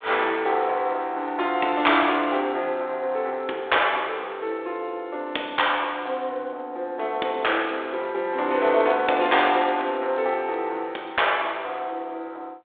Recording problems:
phone line; 260 Hz to 3.7 kHz, G.726

